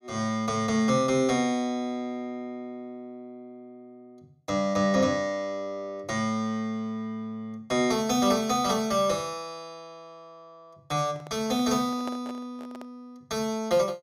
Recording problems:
handling noise; from 11 to 13 s; peak -7 dB vs average level

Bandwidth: 15 kHz